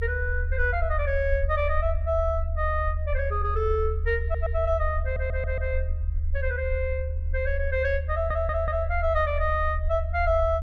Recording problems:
low-frequency rumble; below 76 Hz, SNR 2 dB
audio stuttering; at 4 s, at 5 s and at 8 s

